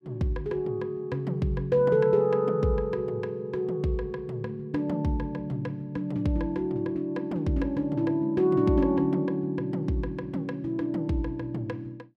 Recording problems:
none

